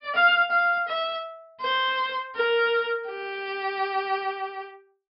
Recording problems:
low-pass filter; nothing above 5.5 kHz

